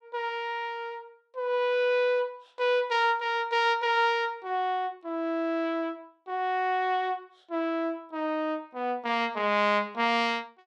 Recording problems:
none

